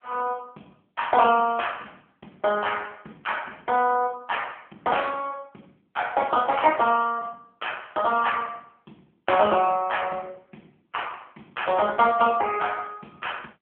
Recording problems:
telephone audio; 220 Hz to 3.3 kHz, AMR-NB

